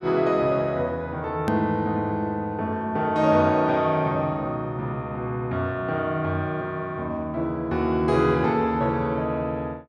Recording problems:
hard cut with a click; at 1.5 s

